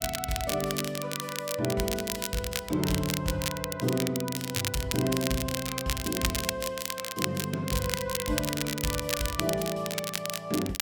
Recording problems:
crackling; vinyl, SNR 2 dB

